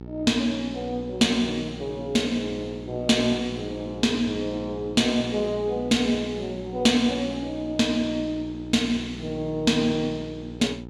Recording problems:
hum; 60 Hz, harmonics up to 960 Hz, SNR 14 dB

